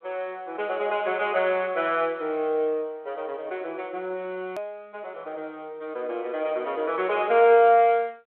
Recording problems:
phone line; 300 Hz to 3.5 kHz, G.726
hard cut with a click; at 4.5 s

